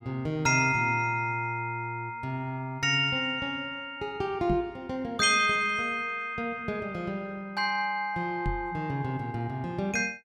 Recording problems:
microphone bump; at 4.5 s and at 8.5 s; peak +1 dB vs average level

